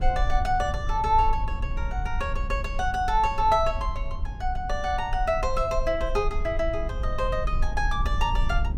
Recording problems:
low-frequency rumble; below 56 Hz, SNR 5 dB

